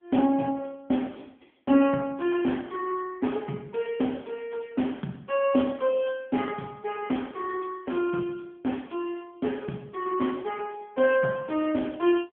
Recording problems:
telephone audio; 170 Hz to 3.3 kHz, AMR-NB

